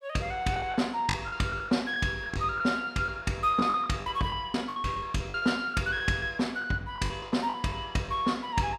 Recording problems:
lost packets; 12% of the sound replaced, filled with the last packet

